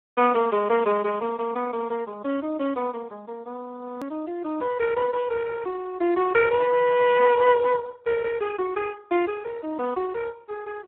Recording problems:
phone line; 240 Hz to 2.9 kHz, Speex
hard cut with a click; at 4 s

